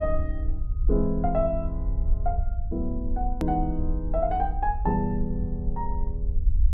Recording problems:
rumble; below 58 Hz, SNR 2 dB
hard cut with a click; at 3.5 s

